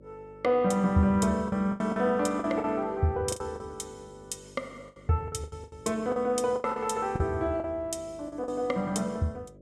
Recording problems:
hum; 50 Hz, harmonics up to 600 Hz, SNR 24 dB
packet loss; 10% of the sound replaced, filled with the last packet

